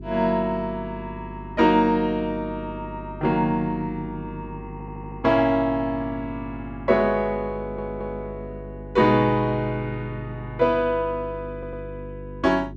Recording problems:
hum; 50 Hz, harmonics up to 400 Hz, SNR 14 dB
audio stuttering; at 4.5 s, at 7.5 s and at 12 s

